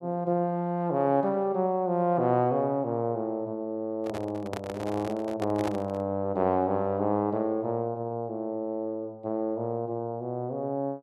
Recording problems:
handling noise; from 4 to 6 s; peak -2 dB vs average level

